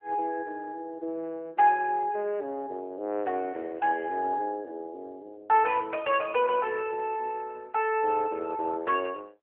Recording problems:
telephone audio; 300 Hz to 3.1 kHz, AMR-NB

